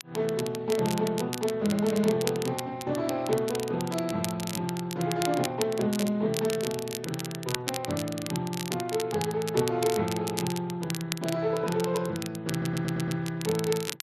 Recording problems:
lossy compression; Speex, log-spectral distance 3 dB
crackling; vinyl, SNR 8 dB
audio stuttering; at 13 s

